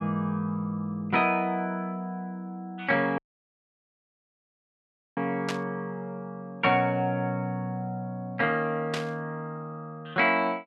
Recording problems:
audio cutting out; at 3 s for 2 s
burst of static; at 5.5 s and at 9 s; peak 0 dB vs average level

